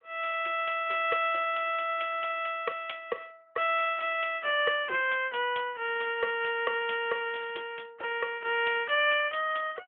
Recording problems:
telephone audio; 300 Hz to 3.4 kHz, AMR-NB

